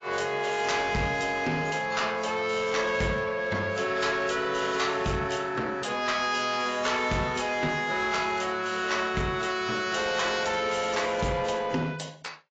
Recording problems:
lossy compression; AAC, log-spectral distance 5 dB, nothing above 7.6 kHz
distorted audio; soft clipping, signal-to-distortion ratio 11 dB

